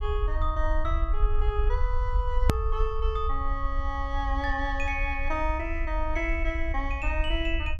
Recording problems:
rumble; below 60 Hz, SNR -1 dB
edit click; at 2.5 s

